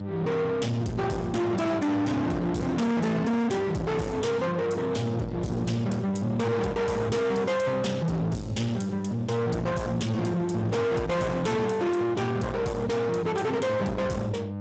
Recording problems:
codec artefacts; Speex, log-spectral distance 4 dB, nothing above 7.8 kHz
distortion; soft clipping, signal-to-distortion ratio 6 dB
hum; 50 Hz, harmonics up to 900 Hz, SNR 10 dB

